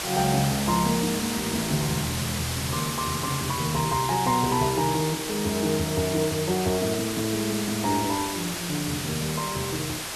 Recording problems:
background hiss; slope -1 dB per octave, SNR 3 dB

